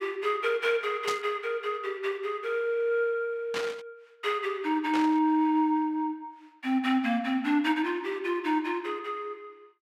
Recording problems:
static burst; at 1 s, at 3.5 s and at 5 s; peak -1 dB vs average level

